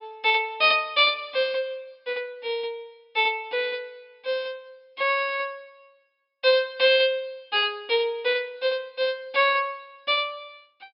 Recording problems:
treble missing; nothing above 5.5 kHz

